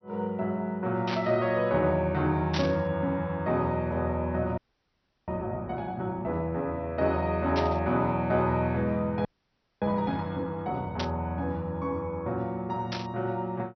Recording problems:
low-pass filter; nothing above 5.9 kHz
static burst; 5 times, first at 1 s; peak 0 dB vs average level
frozen audio; at 4.5 s for 0.5 s and at 9.5 s for 0.5 s

